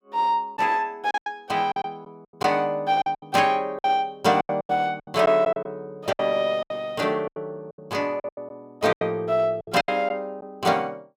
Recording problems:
packet loss; 12% of the sound replaced, filled with silence

